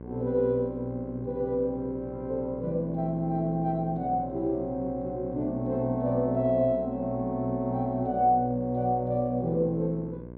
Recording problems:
hum; 60 Hz, harmonics up to 1.1 kHz, SNR 13 dB

